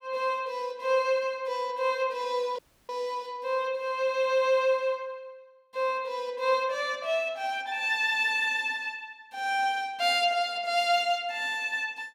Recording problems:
audio cutting out; at 2.5 s

